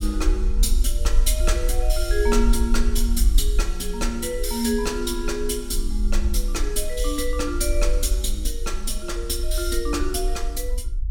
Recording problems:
rumble; below 48 Hz, SNR 0 dB

